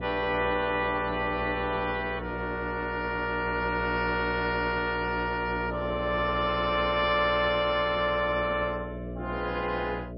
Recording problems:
lossy codec; MP3, log-spectral distance 2 dB, nothing above 4.8 kHz
hum; 60 Hz, harmonics up to 660 Hz, SNR 9 dB

